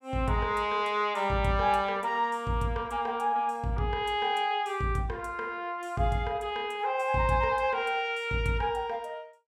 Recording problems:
none

